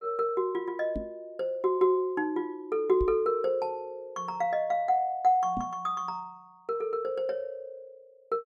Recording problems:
microphone thump; at 1 s, at 3 s and at 5.5 s; peak -2 dB vs average level

